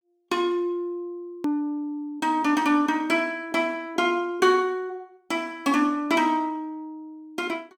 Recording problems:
edit click; at 1.5 s

